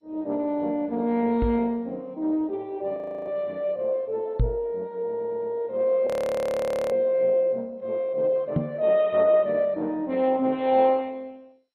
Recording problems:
lossy codec; MP2, then MP2, log-spectral distance 2 dB, nothing above 13.1 kHz
knock on the microphone; at 1.5 s, at 4.5 s and at 8.5 s; peak +5 dB vs average level
audio freezing; at 3 s and at 6 s for 1 s
audio stuttering; at 5 s

